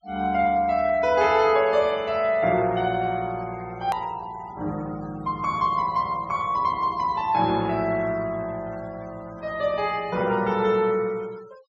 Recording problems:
low-pass filter; nothing above 8 kHz
denoising artefacts; signal-to-artefact ratio 24 dB
hard cut with a click; at 4 s

